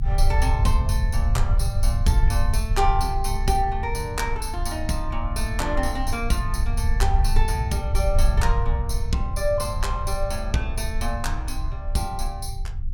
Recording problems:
low-frequency rumble; below 68 Hz, strongest tone 26 Hz, SNR -2 dB

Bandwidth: 17.5 kHz